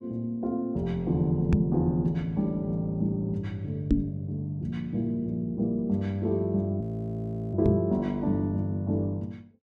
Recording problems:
microphone thump; at 1.5 s, at 4 s and at 7.5 s; peak +9 dB vs average level
audio freezing; at 7 s for 0.5 s

